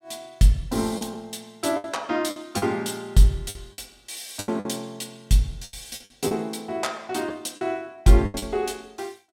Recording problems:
lost packets; 8% of the sound replaced, filled with the last packet

